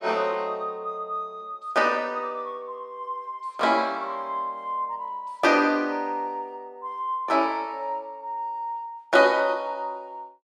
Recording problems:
none

